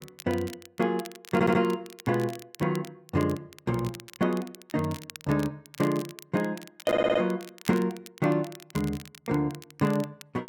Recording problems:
crackling; vinyl, SNR 18 dB
audio stuttering; at 1.5 s and at 7 s

